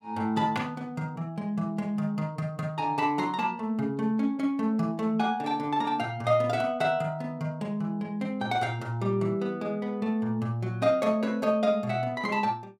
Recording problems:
none

